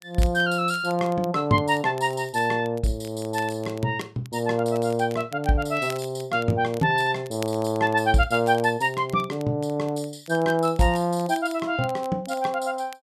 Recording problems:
crackle; vinyl, SNR 23 dB

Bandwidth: 13.5 kHz